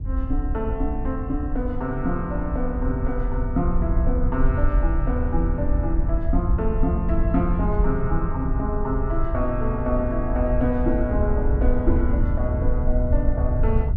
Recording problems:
wind on the microphone; below 70 Hz, SNR -1 dB

